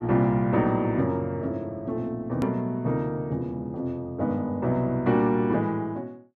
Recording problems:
click at an edit; at 2.5 s

